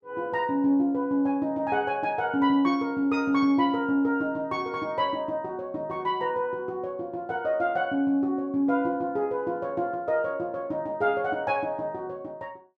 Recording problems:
none

